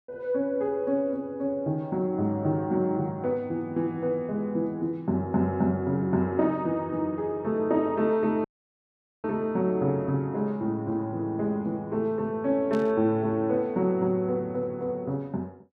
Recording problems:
dropout; at 8.5 s for 1 s
static burst; at 13 s; peak -13 dB vs average level

